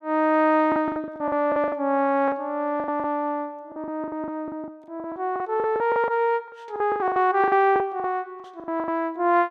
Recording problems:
packet loss; 18% of the sound replaced, filled with the last packet

